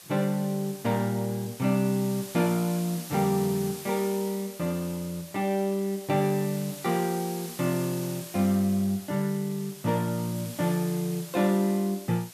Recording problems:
hiss; slope +1 dB per octave, SNR 14 dB

